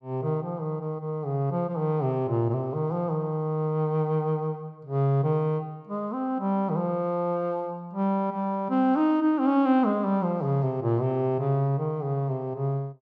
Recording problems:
none

